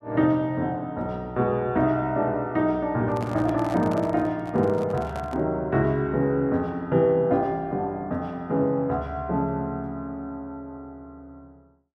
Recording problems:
microphone handling noise; from 3 to 5.5 s; peak -8 dB vs average level

